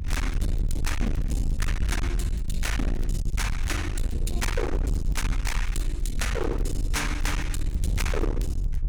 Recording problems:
distortion; hard clipping, signal-to-distortion ratio 6 dB
low-frequency rumble; below 72 Hz, SNR -2 dB
crackling; vinyl, SNR 25 dB

